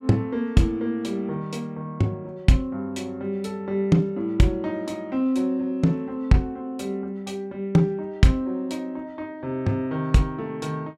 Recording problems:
none

